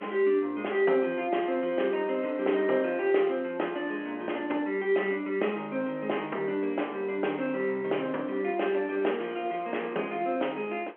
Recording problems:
phone line; 260 Hz to 3.2 kHz, G.711
wind on the microphone; below 1.4 kHz, SNR 23 dB

